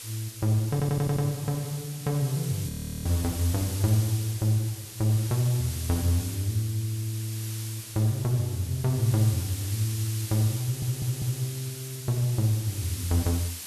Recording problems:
hiss; SNR 10 dB
stutter; at 0.5 s and at 11 s
audio freezing; at 2.5 s

